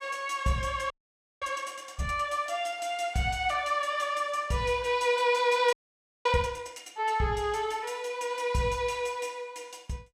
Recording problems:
audio freezing; at 1 s for 0.5 s and at 5.5 s for 0.5 s

